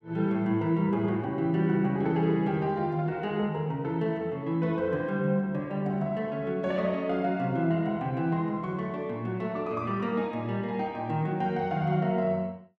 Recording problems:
none

